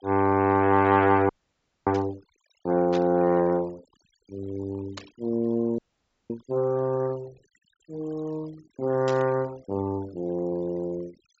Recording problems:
treble missing; nothing above 8 kHz
noise reduction artefacts; signal-to-artefact ratio 25 dB
frozen audio; at 1.5 s for 0.5 s and at 6 s for 0.5 s
static burst; 4 times, first at 2 s; peak -8 dB vs average level

